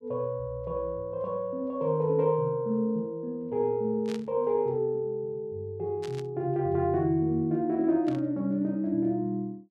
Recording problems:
static burst; at 4 s, at 6 s and at 8 s; peak -10 dB vs average level

